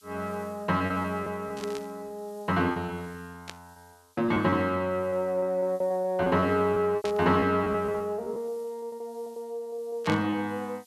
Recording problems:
background hiss; SNR 29 dB
packet loss; 12% of the sound replaced, filled with repeated pitch periods
static burst; 4 times, first at 1.5 s; peak -4 dB vs average level

